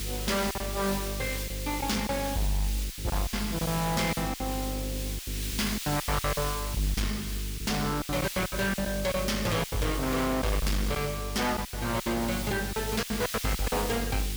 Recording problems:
distortion; hard clipping, uneven, signal-to-distortion ratio 6 dB
hum; 50 Hz, harmonics up to 450 Hz, SNR 7 dB
background hiss; SNR 6 dB
lost packets; 11% of the sound replaced, filled with silence

